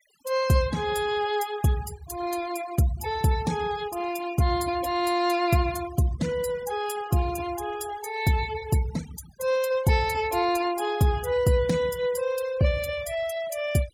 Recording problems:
denoising artefacts; signal-to-artefact ratio 18 dB

